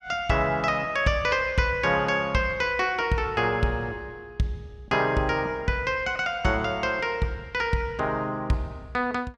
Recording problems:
none

